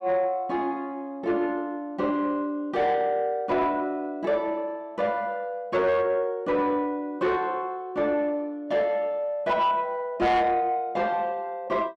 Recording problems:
distortion; soft clipping, signal-to-distortion ratio 11 dB

